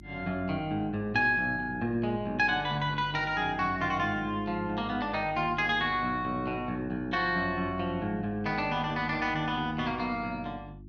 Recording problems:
electrical hum; 50 Hz, harmonics up to 350 Hz, SNR 18 dB

